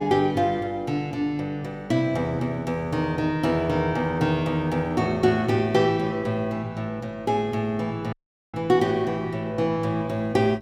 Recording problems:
hum; 50 Hz, harmonics up to 1.2 kHz, SNR 23 dB
dropout; at 8 s

